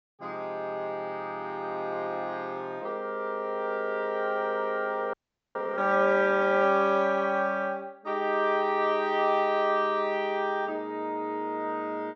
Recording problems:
treble missing; nothing above 8 kHz
frozen audio; at 5 s

